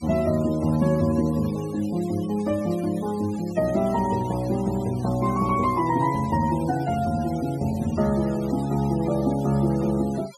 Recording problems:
denoising artefacts; signal-to-artefact ratio 19 dB

